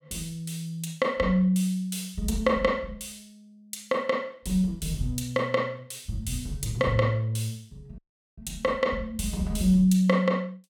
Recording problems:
dropout; at 8 s

